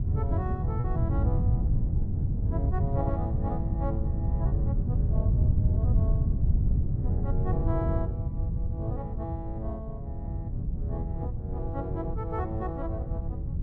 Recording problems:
wind on the microphone; below 120 Hz, SNR -9 dB
packet loss; 0.6% of the sound replaced, filled with repeated pitch periods

